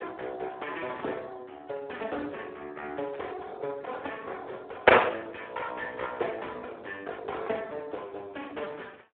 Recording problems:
telephone audio; 300 Hz to 3.7 kHz, Speex

